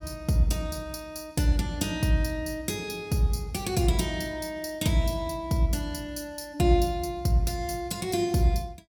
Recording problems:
none

